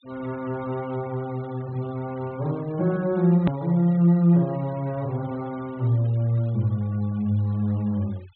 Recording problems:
treble cut off; nothing above 4.1 kHz
noise reduction artefacts; signal-to-artefact ratio 27 dB
hard cut with a click; at 3.5 s

